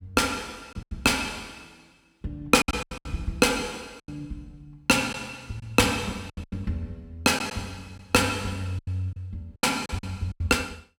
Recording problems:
lost packets; 9% of the sound replaced, filled with silence

